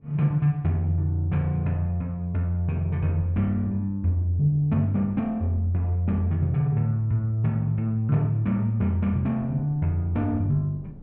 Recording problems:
wind on the microphone; below 200 Hz, SNR 24 dB

